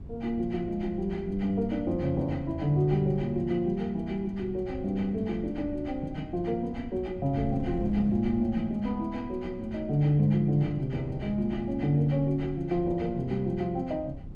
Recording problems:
wind on the microphone; below 170 Hz, SNR 14 dB

